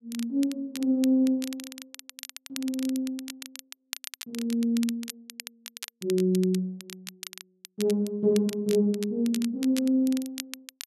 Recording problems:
crackling; vinyl, SNR 14 dB

